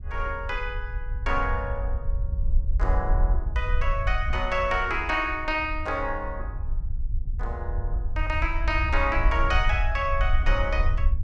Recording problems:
rumble; below 58 Hz, SNR 2 dB

